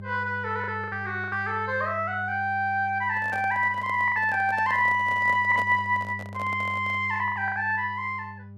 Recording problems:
electrical hum; 50 Hz, harmonics up to 600 Hz, SNR 16 dB
packet loss; 7% of the sound replaced, filled with the last packet
handling noise; from 3 to 7 s; peak -8 dB vs average level

